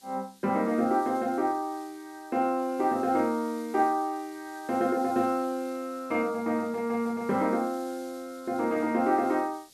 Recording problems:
background hiss; SNR 24 dB

